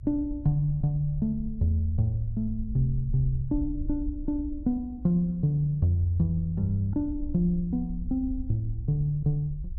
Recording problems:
low-frequency rumble; below 66 Hz, SNR 11 dB

